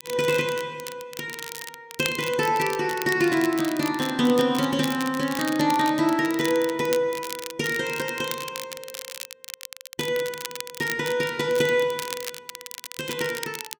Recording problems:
crackling; vinyl, SNR 11 dB

